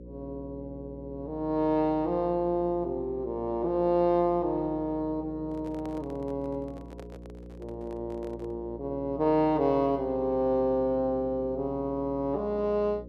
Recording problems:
hum; 60 Hz, harmonics up to 540 Hz, SNR 16 dB
handling noise; from 5.5 to 8.5 s; peak -12 dB vs average level

